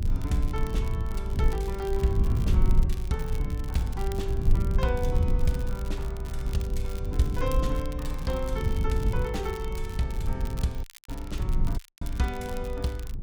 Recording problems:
low-frequency rumble; below 78 Hz, SNR -3 dB
crackle; vinyl, SNR 16 dB
audio cutting out; at 11 s and at 12 s

